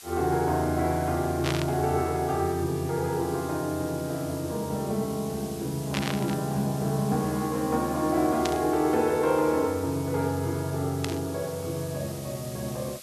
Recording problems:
background hiss; slope +3 dB per octave, SNR 15 dB
burst of static; 4 times, first at 1.5 s; peak +1 dB vs average level

